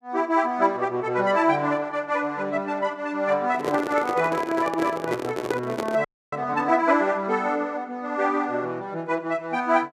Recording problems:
microphone handling noise; from 3.5 to 6 s; peak +3 dB vs average level
audio freezing; at 6 s

